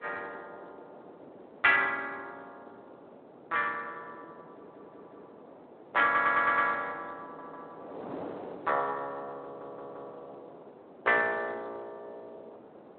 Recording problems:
telephone audio; 300 Hz to 3.6 kHz, Speex
wind noise; below 740 Hz, SNR 20 dB
stutter; 4 times, first at 4.5 s

